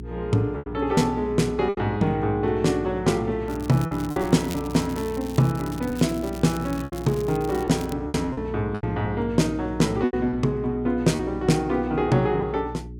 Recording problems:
hum; 60 Hz, harmonics up to 420 Hz, SNR 13 dB
lost packets; 6% of the sound replaced, filled with repeated pitch periods
crackle; from 3.5 to 8 s; loose cable, SNR 19 dB

